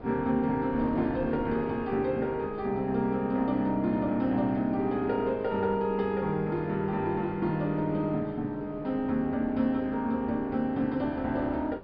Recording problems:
low-pass filter; nothing above 5.5 kHz
wind noise; below 650 Hz, SNR 16 dB

